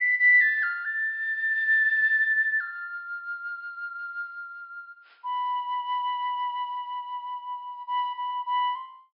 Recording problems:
treble missing; nothing above 5.5 kHz

